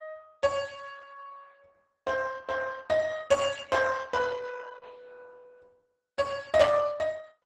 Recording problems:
codec artefacts; Opus, log-spectral distance 5 dB, nothing above 12 kHz
static burst; at 6.5 s; peak -3 dB vs average level

